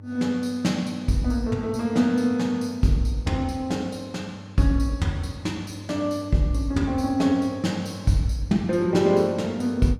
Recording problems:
hum; 50 Hz, harmonics up to 600 Hz, SNR 18 dB

